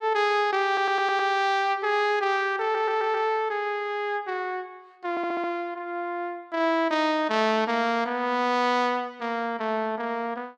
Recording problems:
audio stuttering; at 0.5 s, at 2.5 s and at 5 s

